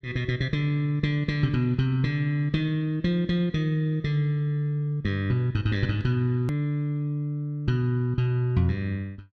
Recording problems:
hard cut with a click; at 6.5 s

